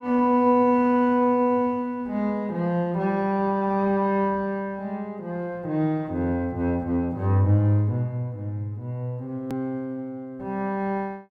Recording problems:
hard cut with a click; at 9.5 s

